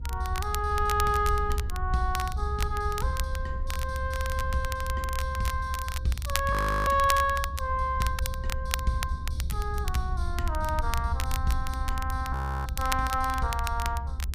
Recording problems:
low-frequency rumble; below 76 Hz, SNR 3 dB
crackle; vinyl, SNR 9 dB
frozen audio; at 6.5 s and at 12 s

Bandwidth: 15 kHz